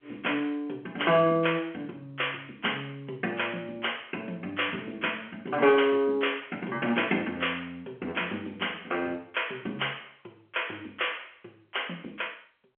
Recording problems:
telephone audio; 240 Hz to 3.3 kHz, G.711

